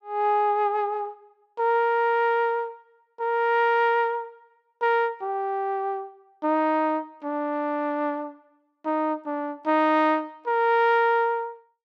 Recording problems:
none

